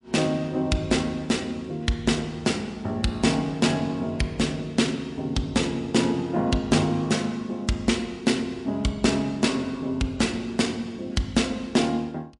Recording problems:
codec artefacts; MP3, log-spectral distance 2 dB

